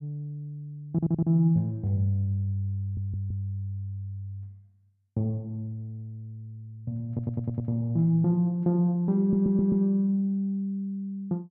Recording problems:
audio stuttering; 4 times, first at 1 s

